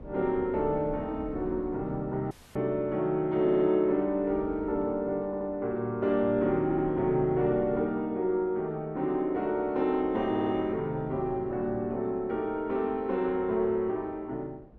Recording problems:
wind on the microphone; below 340 Hz, SNR 19 dB
dropout; at 2.5 s
audio stuttering; 4 times, first at 3.5 s

